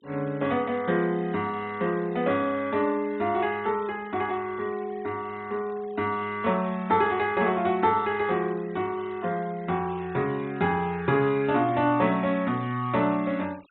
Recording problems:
treble cut off; nothing above 3.9 kHz
noise reduction artefacts; signal-to-artefact ratio 25 dB

